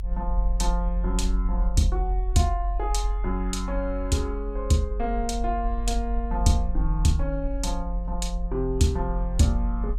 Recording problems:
low-frequency rumble; below 46 Hz, strongest tone 44 Hz, SNR 2 dB

